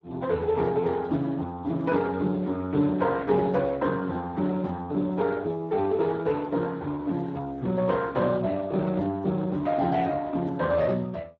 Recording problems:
lossy compression; Speex, log-spectral distance 3 dB

